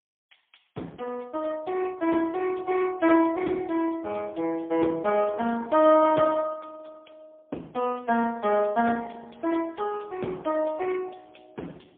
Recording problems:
telephone audio; 190 Hz to 2.6 kHz, AMR-NB, then MP3

